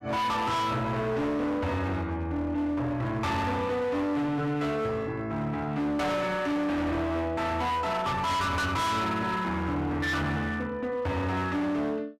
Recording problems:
distorted audio; hard clipping, signal-to-distortion ratio 7 dB

